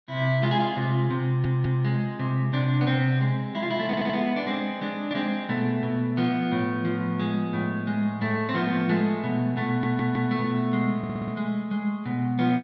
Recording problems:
audio stuttering; 4 times, first at 1.5 s

